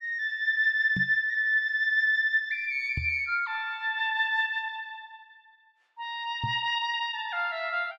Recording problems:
microphone bump; at 1 s, at 3 s and at 6.5 s; peak -3 dB vs average level

